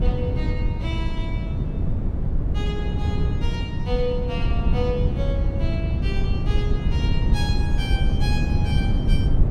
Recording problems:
wind on the microphone; below 130 Hz, SNR -8 dB

